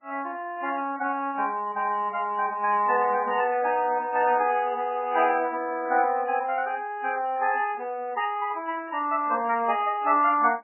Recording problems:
lossy codec; MP3, then MP3, log-spectral distance 3 dB, nothing above 2.5 kHz

